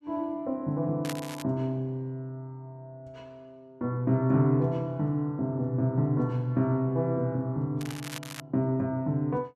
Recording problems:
crackling; at 1 s and at 8 s; loose cable, SNR 13 dB

